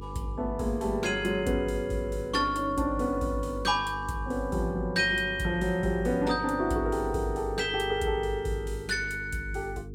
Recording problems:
mains hum; 50 Hz, harmonics up to 450 Hz, SNR 13 dB

